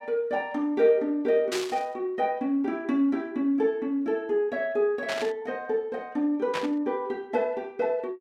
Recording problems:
burst of static; at 1.5 s, at 5 s and at 6.5 s; peak -1 dB vs average level

